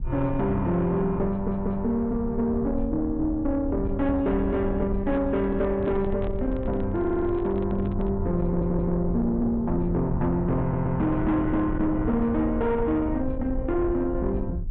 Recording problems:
low-pass filter; nothing above 4 kHz
distorted audio; soft clipping, signal-to-distortion ratio 11 dB
low-frequency rumble; below 110 Hz, SNR 8 dB
audio stuttering; 4 times, first at 1.5 s
microphone handling noise; from 5 to 8 s; peak -9 dB vs average level

